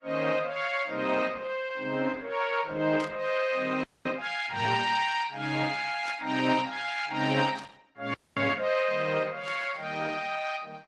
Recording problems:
codec artefacts; AAC, then Opus, log-spectral distance 5 dB
burst of static; 4 times, first at 3 s; peak -10 dB vs average level
audio freezing; at 4 s and at 8 s

